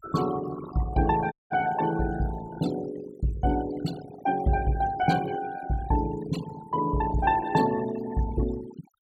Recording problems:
noise reduction artefacts; signal-to-artefact ratio 14 dB
audio cutting out; at 1.5 s

